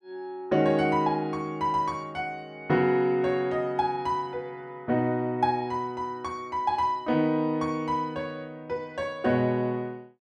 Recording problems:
none

